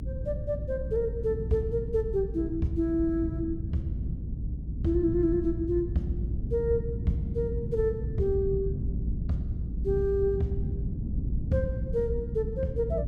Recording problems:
rumble; below 150 Hz, strongest tone 56 Hz, SNR 3 dB

